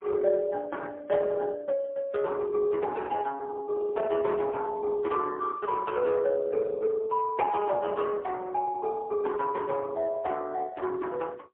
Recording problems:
telephone audio; 300 Hz to 3.5 kHz, AMR-NB, then MP3

